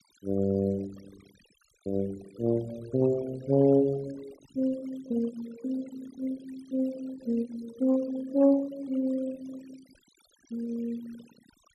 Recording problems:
noise reduction artefacts; signal-to-artefact ratio 21 dB

